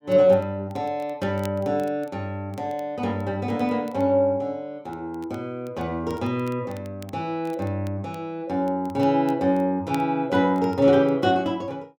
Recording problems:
crackling; vinyl, SNR 28 dB

